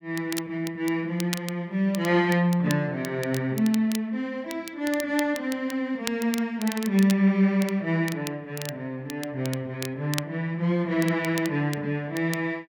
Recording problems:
crackle; vinyl, SNR 13 dB

